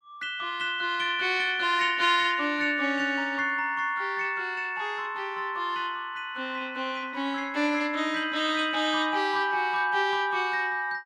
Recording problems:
none

